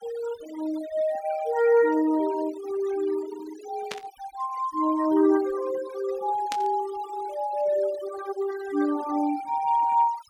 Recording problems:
noise reduction artefacts; signal-to-artefact ratio 17 dB
static burst; at 4 s and at 6.5 s; peak -3 dB vs average level

